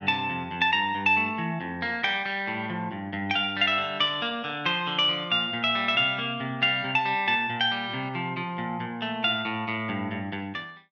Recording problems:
none

